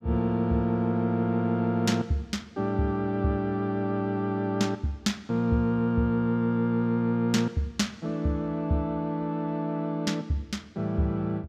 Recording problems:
none

